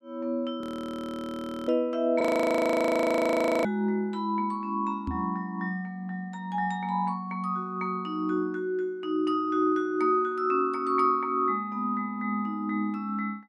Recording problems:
audio freezing; at 0.5 s for 1 s and at 2 s for 1.5 s
microphone thump; at 5 s; peak -2 dB vs average level

